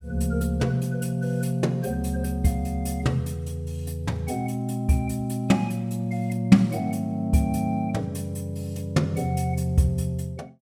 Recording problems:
none

